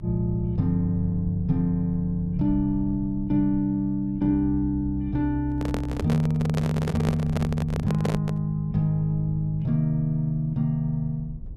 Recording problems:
rumble; below 90 Hz, SNR 15 dB
handling noise; from 5.5 to 8.5 s; peak +1 dB vs average level

